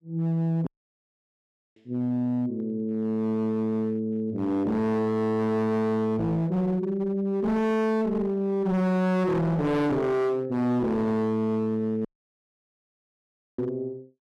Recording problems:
distorted audio; hard clipping, signal-to-distortion ratio 6 dB
dropout; at 0.5 s for 1 s and at 12 s for 1.5 s

